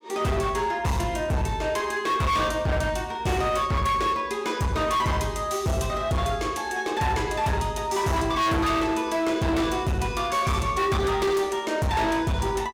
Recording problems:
distorted audio; hard clipping, signal-to-distortion ratio 7 dB

